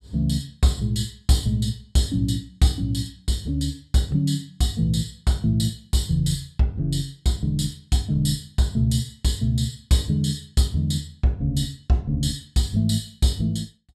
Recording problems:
none

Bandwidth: 14.5 kHz